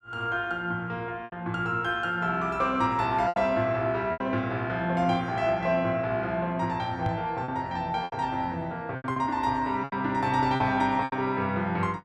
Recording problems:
packet loss; 6% of the sound replaced, filled with repeated pitch periods
microphone thump; at 7 s; peak -1 dB vs average level

